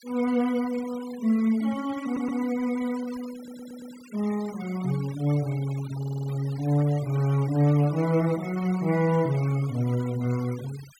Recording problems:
noise reduction artefacts; signal-to-artefact ratio 20 dB
stutter; at 2 s, at 3.5 s and at 6 s

